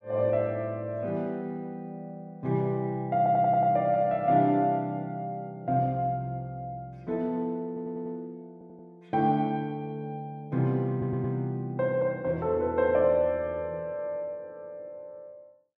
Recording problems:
audio stuttering; 4 times, first at 3 s

